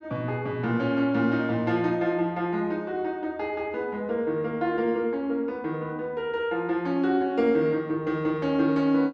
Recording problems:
none

